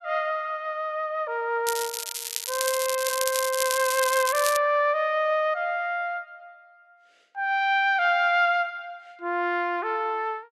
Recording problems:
crackle; from 1.5 to 4.5 s; loose cable, SNR 5 dB

